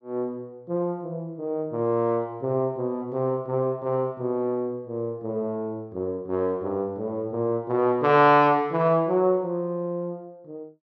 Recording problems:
none

